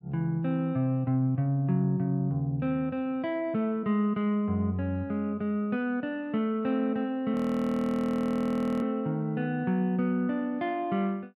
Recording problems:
audio freezing; at 7.5 s for 1.5 s

